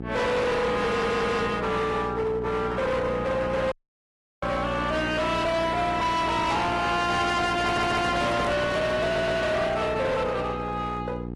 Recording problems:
codec artefacts; AAC, then AAC, log-spectral distance 3 dB, nothing above 11.3 kHz
distorted audio; hard clipping, uneven, signal-to-distortion ratio 7 dB
hum; 60 Hz, harmonics up to 1.3 kHz, SNR 9 dB
audio stuttering; at 1 s, at 7.5 s and at 9 s
audio cutting out; at 3.5 s for 0.5 s
handling noise; from 7.5 to 9.5 s; peak -2 dB vs average level

